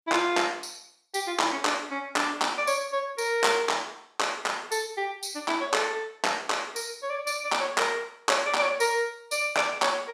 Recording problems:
none

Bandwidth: 15 kHz